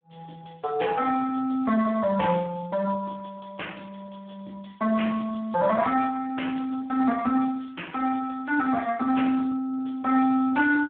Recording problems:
phone line; 240 Hz to 3.3 kHz, Speex

